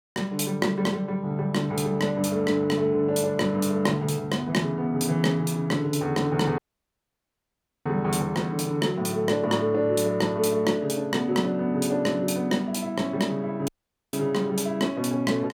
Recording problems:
dropout; at 6.5 s for 1.5 s and at 14 s

